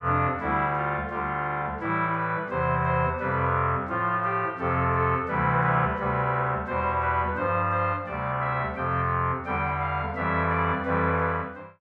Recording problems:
none

